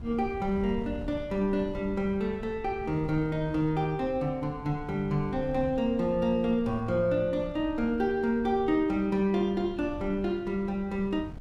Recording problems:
wind on the microphone; below 130 Hz, SNR 16 dB

